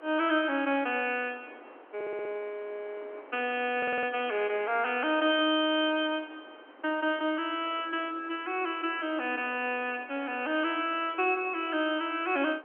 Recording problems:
telephone audio; 260 Hz to 3.3 kHz, G.711
wind noise; below 1.1 kHz, SNR 22 dB
stutter; at 2 s and at 4 s

